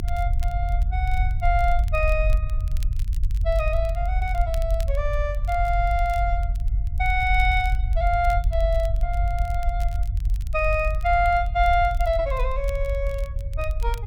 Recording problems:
low-frequency rumble; below 60 Hz, SNR 1 dB
crackling; vinyl, SNR 25 dB

